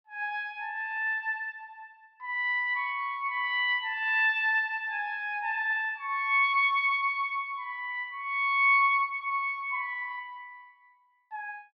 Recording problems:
treble missing; nothing above 5.5 kHz

